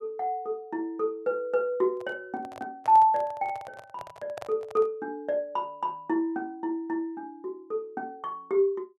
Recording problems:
microphone handling noise; from 2 to 5 s; peak -6 dB vs average level

